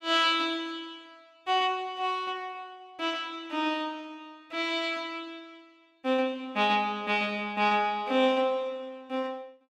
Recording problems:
none

